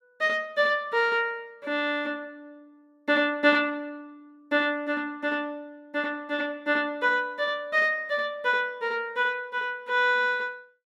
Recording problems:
none

